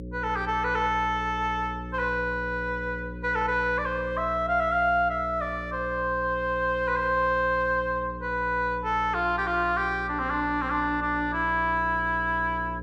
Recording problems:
mains hum; 60 Hz, harmonics up to 540 Hz, SNR 12 dB

